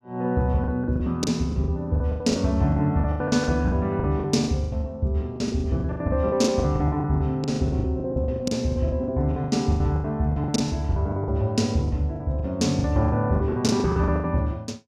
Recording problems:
packet loss; 21% of the sound replaced, filled with the last packet

